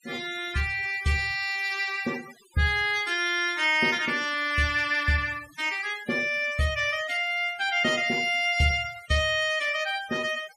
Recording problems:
denoising artefacts; signal-to-artefact ratio 18 dB

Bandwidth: 15 kHz